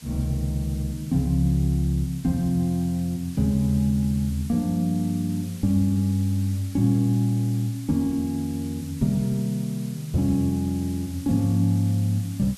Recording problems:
hiss; slope +1 dB per octave, SNR 21 dB

